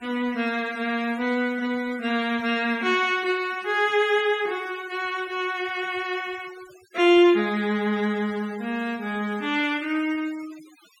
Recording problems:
denoising artefacts; signal-to-artefact ratio 21 dB

